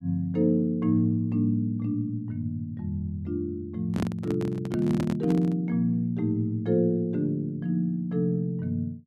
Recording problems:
handling noise; from 4 to 5.5 s; peak 0 dB vs average level

